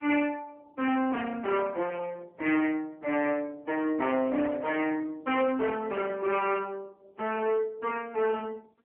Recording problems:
phone line; 260 Hz to 3.1 kHz, AMR-NB
distorted audio; hard clipping, signal-to-distortion ratio 7 dB

